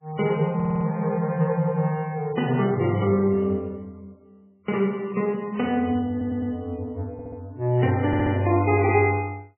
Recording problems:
lossy compression; MP3, log-spectral distance 2 dB, nothing above 2.9 kHz
stutter; 4 times, first at 0.5 s

